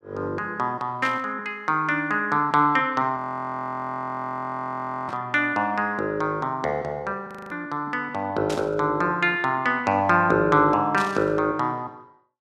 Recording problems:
static burst; 4 times, first at 1 s; peak -6 dB vs average level
audio freezing; at 3 s for 2 s and at 7.5 s

